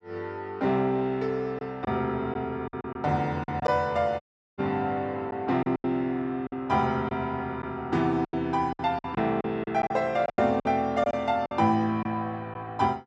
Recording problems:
packet loss; 8% of the sound replaced, filled with silence
audio cutting out; at 4 s

